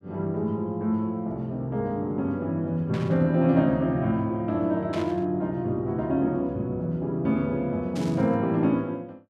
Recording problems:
burst of static; at 3 s, at 5 s and at 8 s; peak -9 dB vs average level

